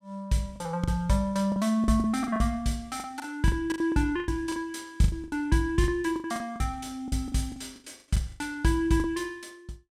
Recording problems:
packet loss; 14% of the sound replaced, filled with the last packet

